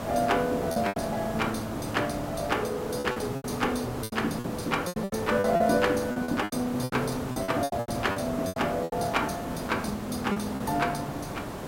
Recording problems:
hiss; slope -7 dB per octave, SNR 6 dB
lost packets; 12% of the sound replaced, filled with repeated pitch periods

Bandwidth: 16 kHz